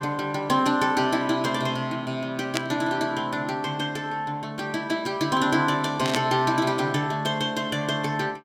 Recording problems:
static burst; at 2.5 s and at 6 s; peak +3 dB vs average level

